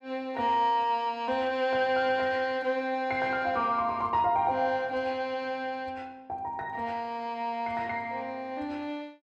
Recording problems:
none

